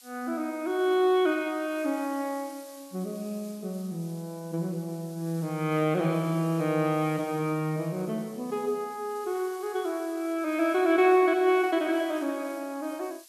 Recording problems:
background hiss; slope +4 dB per octave, SNR 22 dB

